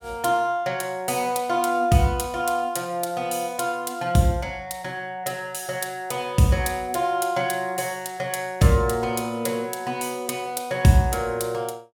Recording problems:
none

